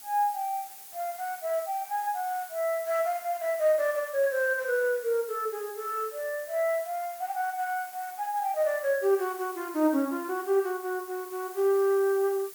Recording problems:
hiss; slope +1 dB per octave, SNR 15 dB

